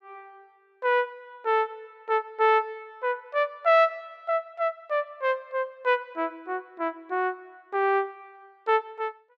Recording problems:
none

